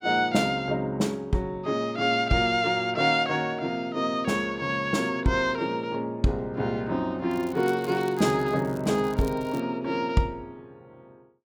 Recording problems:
crackle; from 7.5 to 9.5 s; loose cable, SNR 23 dB

